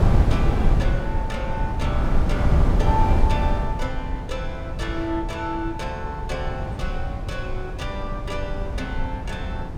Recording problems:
wind noise; below 120 Hz, SNR -5 dB

